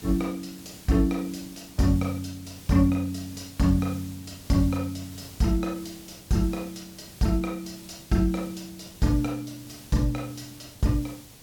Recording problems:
hiss; SNR 18 dB

